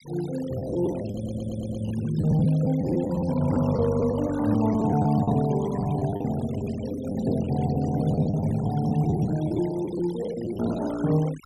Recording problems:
noise reduction artefacts; signal-to-artefact ratio 18 dB
packet loss; 12% of the sound replaced, filled with the last packet
stutter; at 1 s

